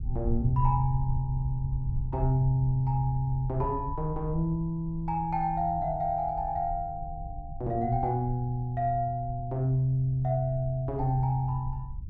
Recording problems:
rumble; below 80 Hz, SNR 9 dB

